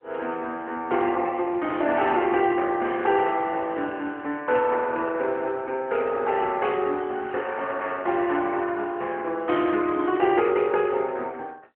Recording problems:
telephone audio; 260 Hz to 3.2 kHz, AMR-NB

